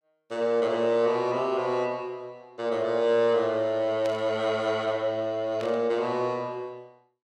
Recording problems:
static burst; at 4 s and at 5.5 s; peak -10 dB vs average level

